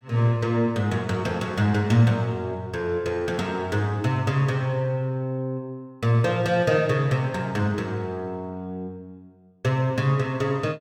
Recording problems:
none

